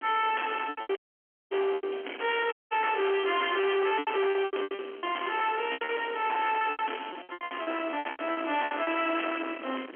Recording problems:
telephone audio; 220 Hz to 3.3 kHz, G.711
distortion; soft clipping, signal-to-distortion ratio 7 dB
wind noise; below 2.3 kHz, SNR 13 dB
lost packets; 16% of the sound replaced, filled with repeated pitch periods
audio cutting out; at 1 s for 0.5 s and at 2.5 s

